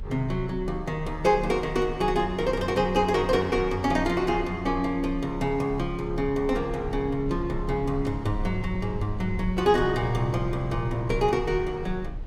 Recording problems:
low-frequency rumble; below 66 Hz, strongest tone 32 Hz, SNR 12 dB

